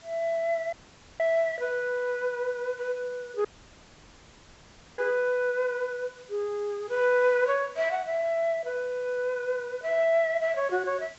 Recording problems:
treble cut off; nothing above 7.8 kHz
hiss; slope -1 dB per octave, SNR 25 dB
dropout; at 0.5 s and at 3.5 s for 1.5 s

